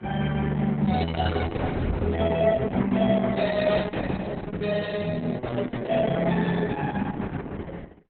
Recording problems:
lossy compression; AAC, then Opus, log-spectral distance 4 dB, nothing above 4 kHz

